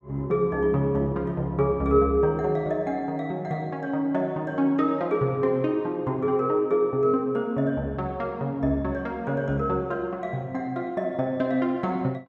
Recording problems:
none

